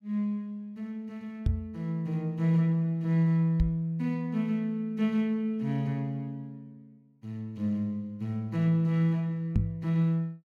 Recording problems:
microphone thump; at 1.5 s, at 3.5 s and at 9.5 s; peak +6 dB vs average level

